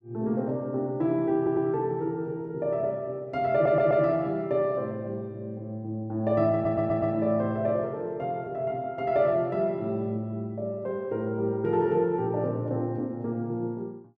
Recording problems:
audio stuttering; at 1.5 s, at 3.5 s and at 6.5 s

